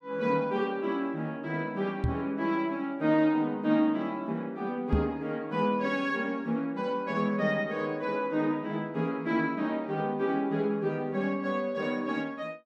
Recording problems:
microphone bump; at 2 s and at 5 s; peak +6 dB vs average level

